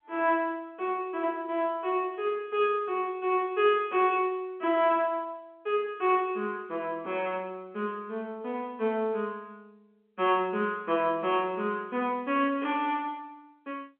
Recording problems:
telephone audio; 220 Hz to 3.2 kHz, G.711

